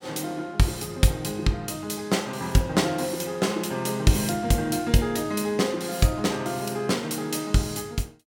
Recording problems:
none

